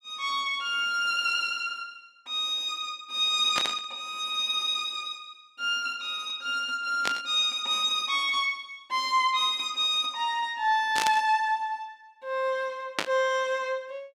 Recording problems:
burst of static; 4 times, first at 3.5 s; peak +4 dB vs average level

